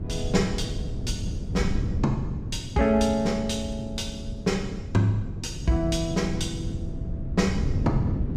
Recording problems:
wind noise; below 160 Hz, SNR 5 dB

